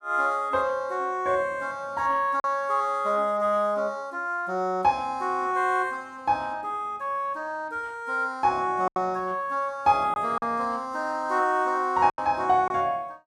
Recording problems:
lost packets; 2% of the sound replaced, filled with silence

